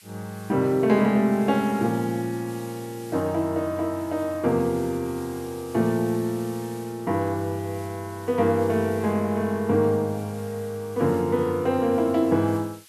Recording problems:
hiss; SNR 22 dB

